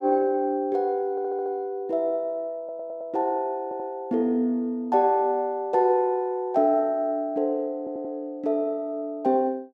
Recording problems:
stutter; 4 times, first at 1 s

